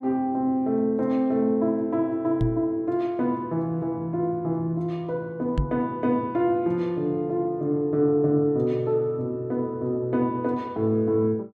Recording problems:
knock on the microphone; at 2.5 s and at 5.5 s; peak +3 dB vs average level

